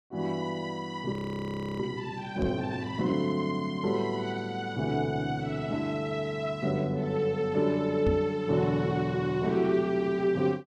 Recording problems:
audio freezing; at 1 s for 0.5 s
knock on the microphone; at 2.5 s and at 8 s; peak +3 dB vs average level

